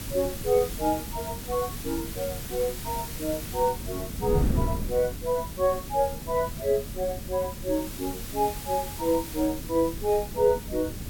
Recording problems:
background hiss; slope 0 dB per octave, SNR 11 dB
wind noise; below 220 Hz, SNR 8 dB

